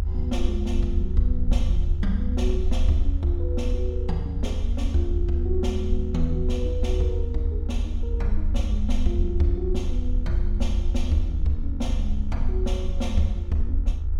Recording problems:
electrical hum; 60 Hz, harmonics up to 1.8 kHz, SNR 19 dB
rumble; below 74 Hz, SNR -3 dB

